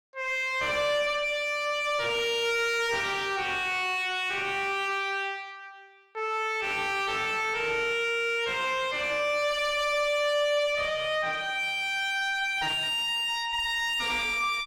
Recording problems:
distorted audio; soft clipping, signal-to-distortion ratio 6 dB

